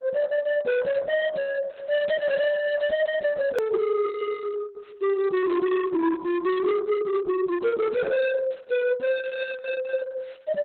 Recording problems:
lossy compression; Opus, log-spectral distance 3 dB, nothing above 3.7 kHz
distortion; hard clipping, signal-to-distortion ratio 7 dB
edit click; at 3.5 s

